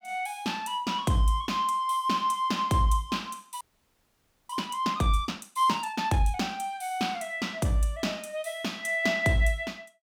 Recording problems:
audio freezing; at 3.5 s for 1 s

